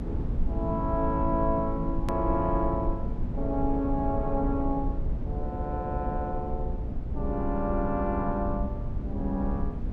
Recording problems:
low-frequency rumble; below 110 Hz, SNR 3 dB
edit click; at 2 s

